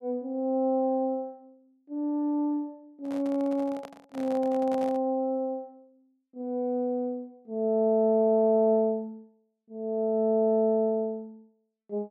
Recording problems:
microphone handling noise; from 3 to 5 s; peak -10 dB vs average level

